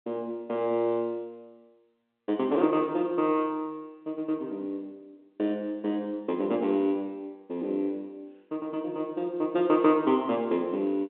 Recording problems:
phone line; 260 Hz to 3.7 kHz, G.711

